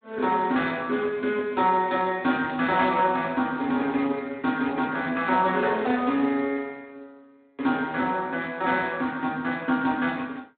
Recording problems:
phone line; 220 Hz to 3.6 kHz, Speex

